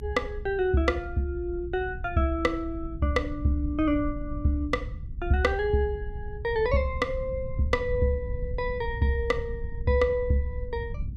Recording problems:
rumble; below 88 Hz, SNR 9 dB

